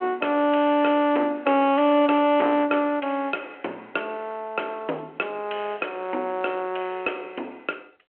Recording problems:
phone line; 240 Hz to 3.3 kHz, G.726
distortion; hard clipping, signal-to-distortion ratio 13 dB

